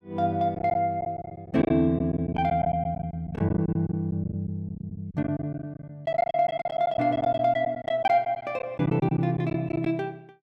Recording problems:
packet loss; 13% of the sound replaced, filled with silence

